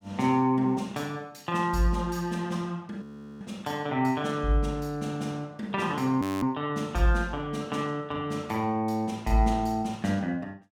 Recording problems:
frozen audio; at 3 s and at 6 s

